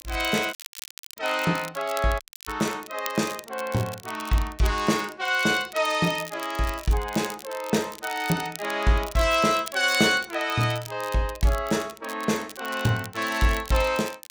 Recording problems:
crackle; vinyl, SNR 15 dB
audio cutting out; at 0.5 s for 0.5 s and at 2 s

